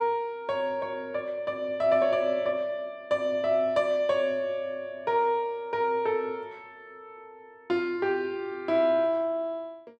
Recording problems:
none

